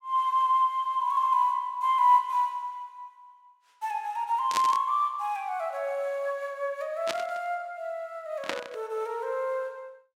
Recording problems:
burst of static; at 4.5 s, at 7 s and at 8.5 s; peak +1 dB vs average level

